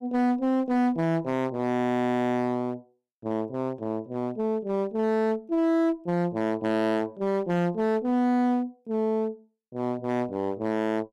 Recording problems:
distortion; hard clipping, uneven, signal-to-distortion ratio 7 dB

